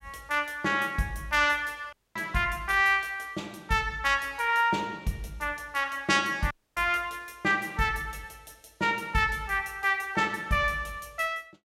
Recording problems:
dropout; at 2 s and at 6.5 s

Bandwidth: 16 kHz